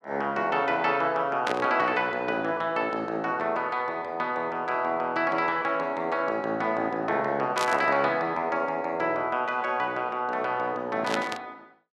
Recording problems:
burst of static; at 1.5 s, at 7.5 s and at 11 s; peak +1 dB vs average level

